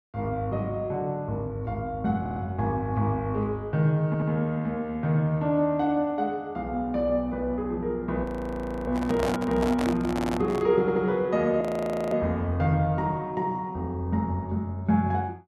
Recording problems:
audio stuttering; 4 times, first at 2 s
audio freezing; at 8 s for 0.5 s and at 12 s for 0.5 s
handling noise; from 9 to 11 s; peak 0 dB vs average level

